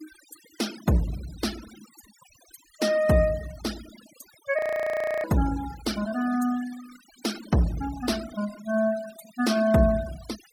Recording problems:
denoising artefacts; signal-to-artefact ratio 16 dB
audio freezing; at 4.5 s for 0.5 s

